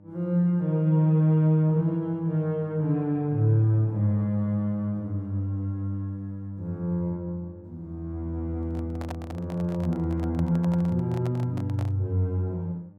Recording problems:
hum; 50 Hz, harmonics up to 900 Hz, SNR 25 dB
handling noise; from 8.5 to 12 s; peak -8 dB vs average level

